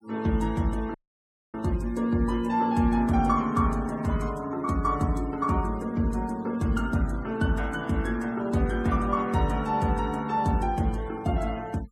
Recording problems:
denoising artefacts; signal-to-artefact ratio 24 dB
audio cutting out; at 1 s for 0.5 s

